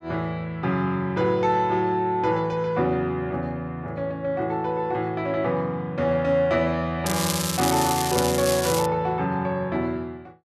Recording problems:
crackling; from 7 to 9 s; loose cable, SNR 4 dB

